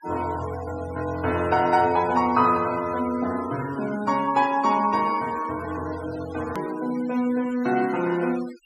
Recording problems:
noise reduction artefacts; signal-to-artefact ratio 17 dB
edit click; at 6.5 s

